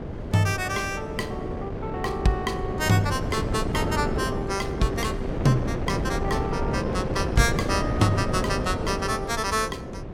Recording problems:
wind on the microphone; below 440 Hz, SNR 3 dB

